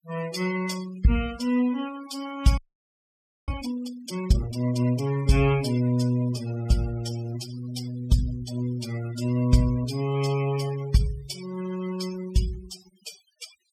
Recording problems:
denoising artefacts; signal-to-artefact ratio 14 dB
frozen audio; at 2.5 s for 1 s

